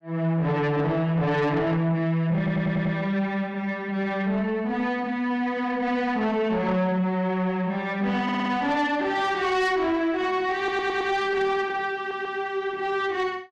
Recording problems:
distortion; soft clipping, signal-to-distortion ratio 12 dB
stutter; 4 times, first at 2.5 s

